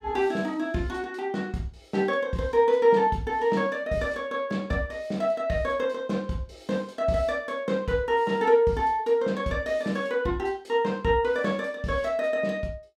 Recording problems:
none

